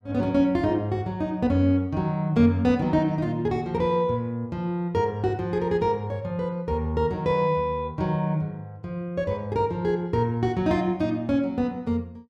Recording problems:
none

